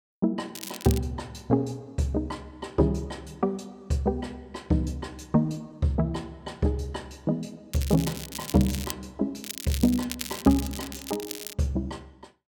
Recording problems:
crackle; at 0.5 s, from 7.5 to 9 s and from 9.5 to 12 s; loose cable, SNR 9 dB

